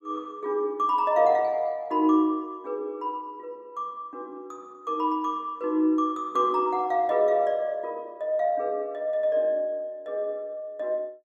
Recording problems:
none

